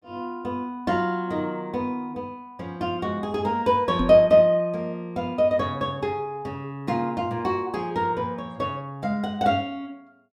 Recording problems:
knock on the microphone; at 4 s; peak +2 dB vs average level

